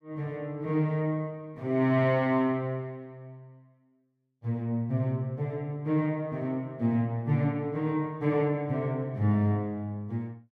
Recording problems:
none

